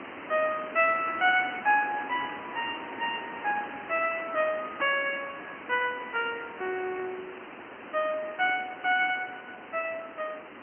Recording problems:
telephone audio; 240 Hz to 3 kHz, Speex
background hiss; SNR 12 dB
static burst; at 1 s; peak -14 dB vs average level

